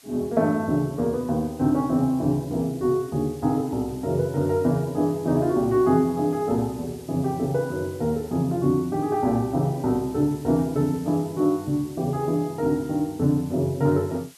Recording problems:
hiss; slope +2 dB per octave, SNR 24 dB

